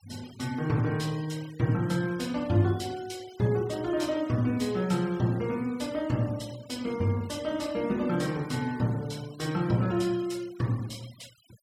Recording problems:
denoising artefacts; signal-to-artefact ratio 21 dB

